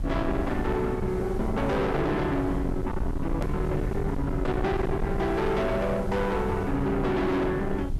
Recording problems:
distorted audio; soft clipping, signal-to-distortion ratio 7 dB
hum; 50 Hz, harmonics up to 400 Hz, SNR 20 dB
background hiss; slope -3 dB per octave, SNR 27 dB
rumble; below 250 Hz, SNR 6 dB
hard cut with a click; at 3.5 s

